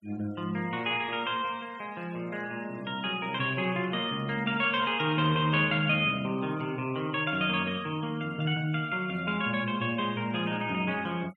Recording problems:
denoising artefacts; signal-to-artefact ratio 25 dB

